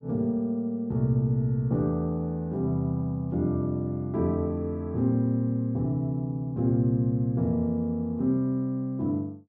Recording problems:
none

